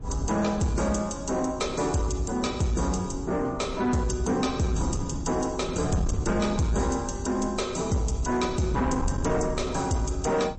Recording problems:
codec artefacts; MP3, log-spectral distance 4 dB, nothing above 8 kHz
distortion; soft clipping, signal-to-distortion ratio 12 dB
wind on the microphone; below 170 Hz, SNR 10 dB

